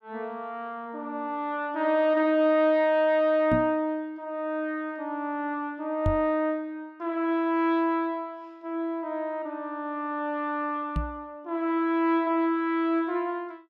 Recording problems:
microphone bump; at 3.5 s, at 6 s and at 11 s; peak +3 dB vs average level

